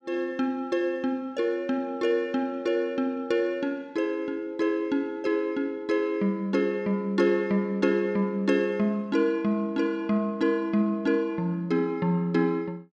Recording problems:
none

